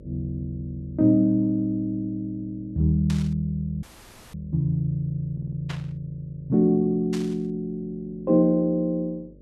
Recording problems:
hum; 50 Hz, harmonics up to 600 Hz, SNR 25 dB
burst of static; at 3 s, at 5.5 s and at 7 s; peak -8 dB vs average level
dropout; at 4 s for 0.5 s
stutter; at 5.5 s

